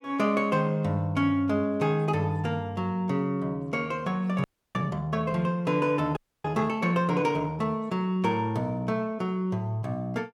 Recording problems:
frozen audio; at 4.5 s and at 6 s

